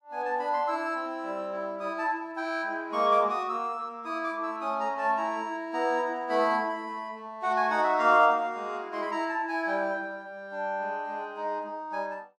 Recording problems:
none

